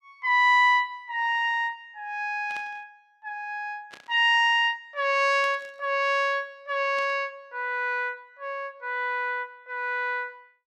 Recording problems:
static burst; 4 times, first at 2.5 s; peak -14 dB vs average level

